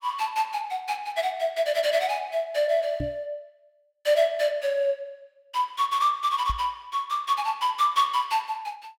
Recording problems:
microphone bump; at 3 s and at 6.5 s; peak -2 dB vs average level

